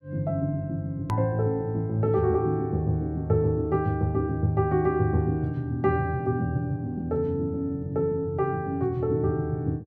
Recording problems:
edit click; at 1 s

